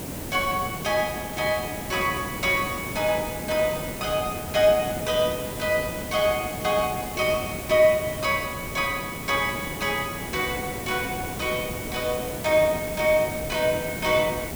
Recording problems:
hiss; SNR 8 dB

